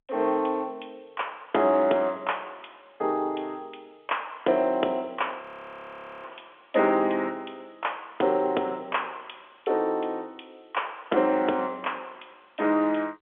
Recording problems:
telephone audio; 300 Hz to 3.4 kHz, G.711
frozen audio; at 5.5 s for 1 s

